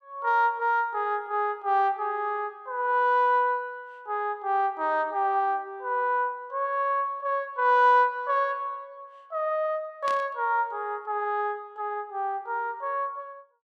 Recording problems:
static burst; at 10 s; peak -8 dB vs average level

